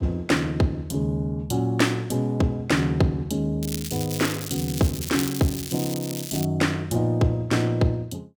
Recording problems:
crackling; from 3.5 to 6.5 s; loose cable, SNR 9 dB

